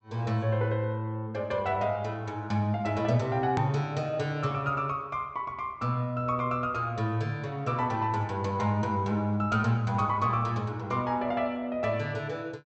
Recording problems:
treble missing; nothing above 8 kHz
hard cut with a click; at 3.5 s

